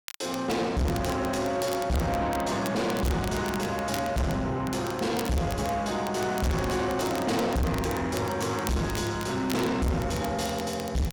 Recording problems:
distortion; soft clipping, signal-to-distortion ratio 6 dB
crackle; vinyl, SNR 14 dB

